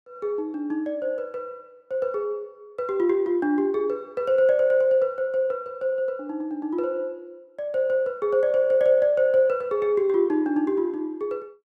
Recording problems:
none

